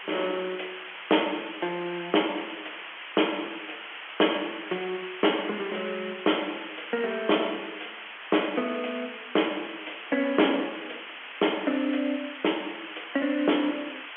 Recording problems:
telephone audio; 260 Hz to 3.3 kHz, G.711
distorted audio; hard clipping, uneven, signal-to-distortion ratio 13 dB
background hiss; SNR 10 dB

